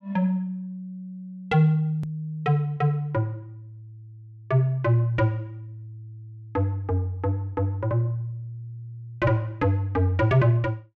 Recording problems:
edit click; at 2 s

